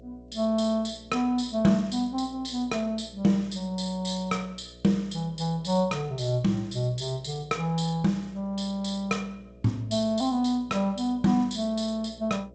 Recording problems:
lossy compression; G.722, log-spectral distance 4 dB, nothing above 8.2 kHz
hum; 60 Hz, harmonics up to 660 Hz, SNR 23 dB

